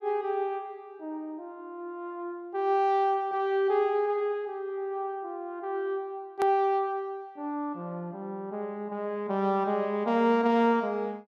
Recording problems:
edit click; at 6.5 s

